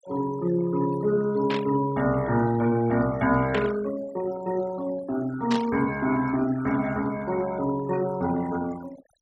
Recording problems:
noise reduction artefacts; signal-to-artefact ratio 17 dB
burst of static; at 1.5 s, at 3.5 s and at 5.5 s; peak -1 dB vs average level

